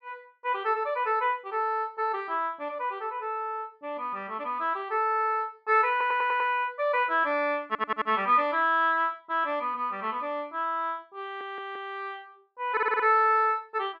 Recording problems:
stutter; 4 times, first at 6 s

